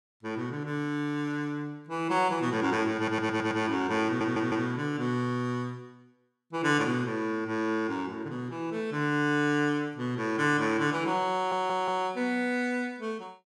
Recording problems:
audio stuttering; at 3 s, at 4 s and at 11 s

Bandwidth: 16.5 kHz